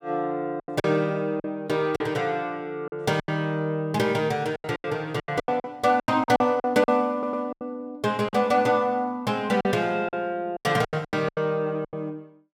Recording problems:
lost packets; 13% of the sound replaced, filled with silence
stutter; at 7 s

